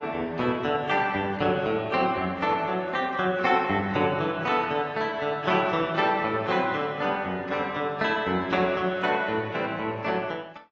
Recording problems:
codec artefacts; AAC, log-spectral distance 2 dB

